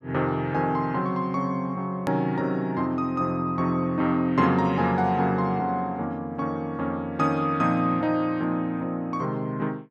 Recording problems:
edit click; at 2 s

